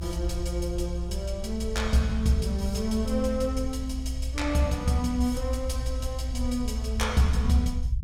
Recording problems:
low-frequency rumble; below 64 Hz, strongest tone 62 Hz, SNR 4 dB

